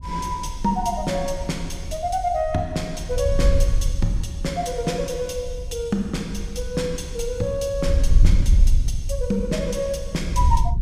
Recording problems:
wind on the microphone; below 70 Hz, SNR 0 dB

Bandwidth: 15 kHz